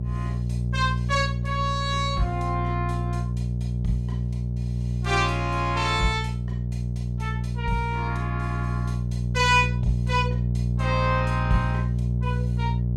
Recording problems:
electrical hum; 60 Hz, harmonics up to 420 Hz, SNR 0 dB

